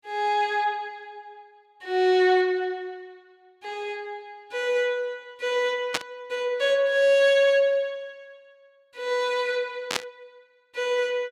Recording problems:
burst of static; at 6 s and at 10 s; peak +3 dB vs average level

